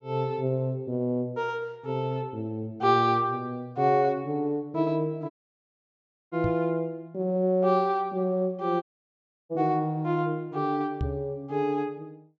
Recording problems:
low-pass filter; nothing above 8 kHz
audio cutting out; at 5.5 s for 1 s and at 9 s for 0.5 s
knock on the microphone; at 6.5 s and at 11 s; peak 0 dB vs average level

